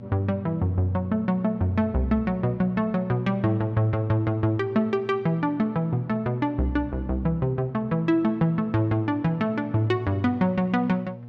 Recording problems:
electrical hum; 60 Hz, harmonics up to 840 Hz, SNR 18 dB

